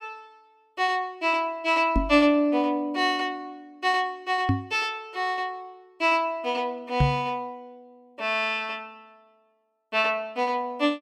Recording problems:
knock on the microphone; at 2 s, at 4.5 s and at 7 s; peak +6 dB vs average level

